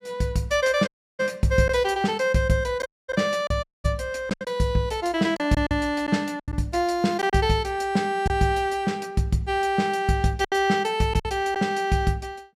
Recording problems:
lost packets; 5% of the sound replaced, filled with silence
dropout; at 1 s, at 3 s and at 3.5 s

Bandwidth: 15.5 kHz